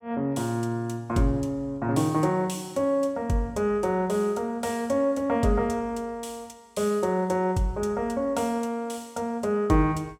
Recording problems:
none

